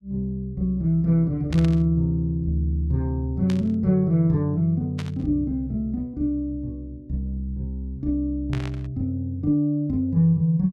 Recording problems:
static burst; 4 times, first at 1.5 s; peak -8 dB vs average level

